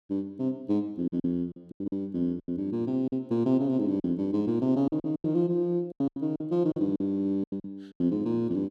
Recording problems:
packet loss; 12% of the sound replaced, filled with silence

